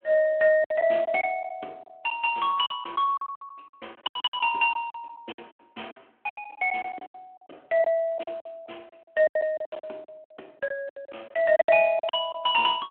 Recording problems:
telephone audio; 260 Hz to 3.3 kHz, Speex
packet loss; 17% of the sound replaced, filled with silence

